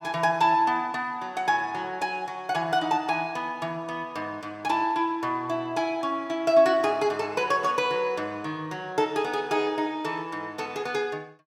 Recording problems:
none

